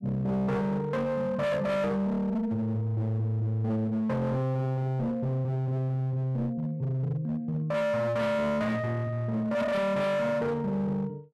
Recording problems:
distortion; hard clipping, signal-to-distortion ratio 8 dB

